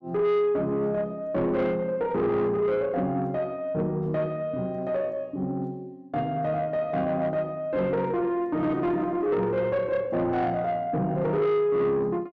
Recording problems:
distorted audio; soft clipping, signal-to-distortion ratio 12 dB

